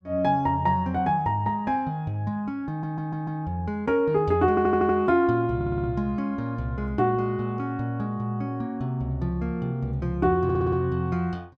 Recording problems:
stutter; 4 times, first at 2.5 s

